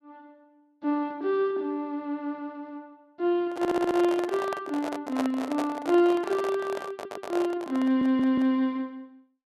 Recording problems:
microphone handling noise; from 3.5 to 8.5 s; peak 0 dB vs average level
stutter; at 3.5 s, at 7 s and at 8 s

